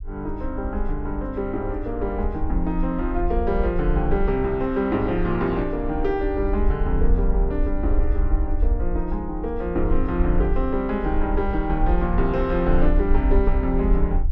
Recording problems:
low-frequency rumble; below 54 Hz, SNR 2 dB

